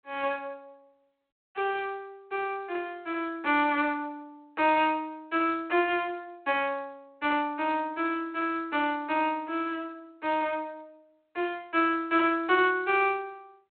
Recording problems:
phone line; 300 Hz to 3.6 kHz, G.726

